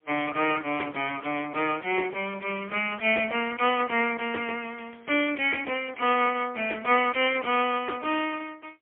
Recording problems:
telephone audio; 320 Hz to 3.2 kHz, AMR-NB, then MP3

